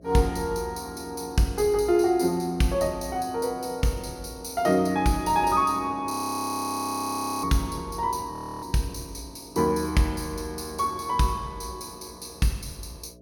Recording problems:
hum; 60 Hz, harmonics up to 660 Hz, SNR 25 dB
audio freezing; at 6 s for 1.5 s and at 8.5 s

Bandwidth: 17.5 kHz